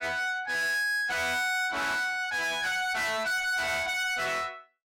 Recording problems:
distortion; soft clipping, signal-to-distortion ratio 7 dB

